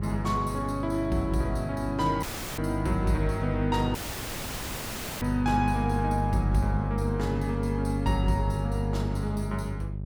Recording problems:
electrical hum; 50 Hz, harmonics up to 450 Hz, SNR 2 dB
dropout; at 2 s and at 4 s for 1.5 s

